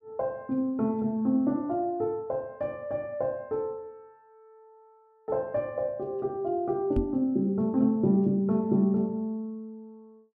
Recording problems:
microphone thump; at 7 s; peak +3 dB vs average level

